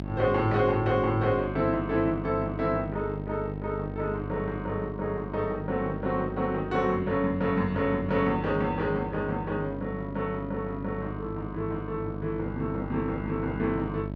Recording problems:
hum; 50 Hz, harmonics up to 1 kHz, SNR 7 dB

